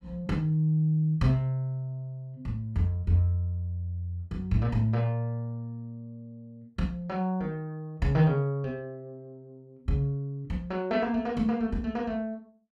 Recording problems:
none

